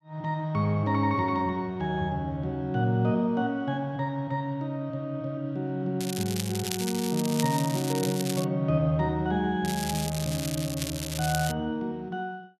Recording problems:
crackling; from 6 to 8.5 s and from 9.5 to 12 s; loose cable, SNR 7 dB

